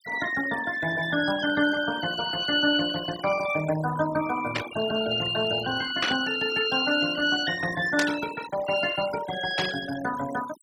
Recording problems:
denoising artefacts; signal-to-artefact ratio 12 dB
static burst; 4 times, first at 4.5 s; peak +3 dB vs average level

